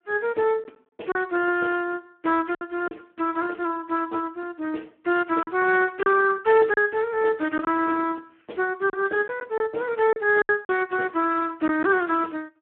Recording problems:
phone line; 240 Hz to 2.6 kHz, Speex
packet loss; 4% of the sound replaced, filled with silence

